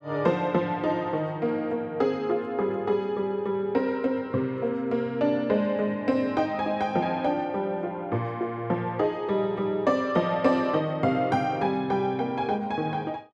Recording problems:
none

